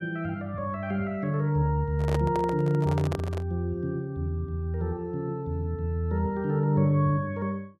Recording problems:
microphone handling noise; from 2 to 3.5 s; peak -1 dB vs average level

